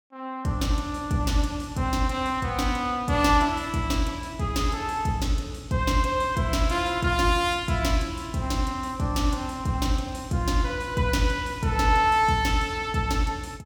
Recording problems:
none

